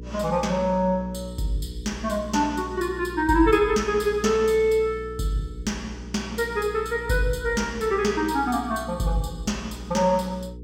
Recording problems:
electrical hum; 60 Hz, harmonics up to 480 Hz, SNR 14 dB

